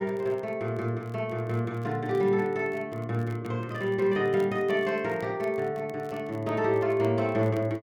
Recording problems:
crackle; vinyl, SNR 29 dB

